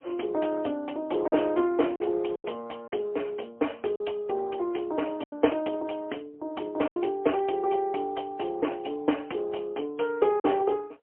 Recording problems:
telephone audio; 240 Hz to 3.2 kHz, AMR-NB, then MP3
packet loss; 4% of the sound replaced, filled with silence

